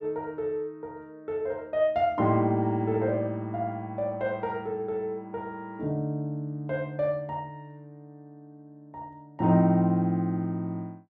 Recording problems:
none

